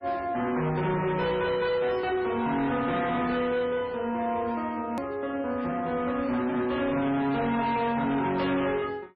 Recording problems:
lossy compression; MP3, log-spectral distance 2 dB, nothing above 13.1 kHz
distortion; hard clipping, uneven, signal-to-distortion ratio 10 dB
edit click; at 5 s

